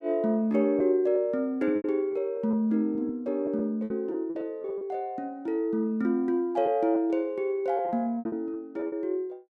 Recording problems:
lost packets; 7% of the sound replaced, filled with repeated pitch periods

